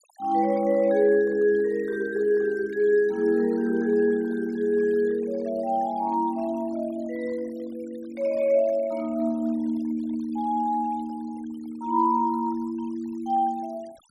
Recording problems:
noise reduction artefacts; signal-to-artefact ratio 26 dB

